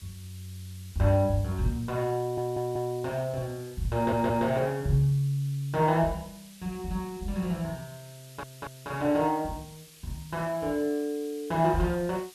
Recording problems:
hiss; SNR 22 dB
audio stuttering; at 2 s, at 4 s and at 8 s

